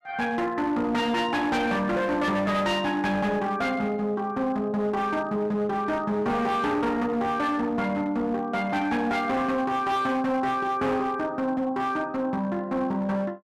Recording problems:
distorted audio; hard clipping, signal-to-distortion ratio 11 dB

